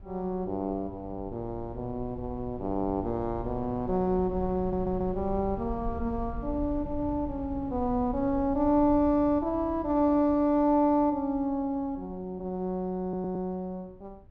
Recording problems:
low-frequency rumble; below 100 Hz, SNR 15 dB
audio stuttering; at 4.5 s and at 13 s

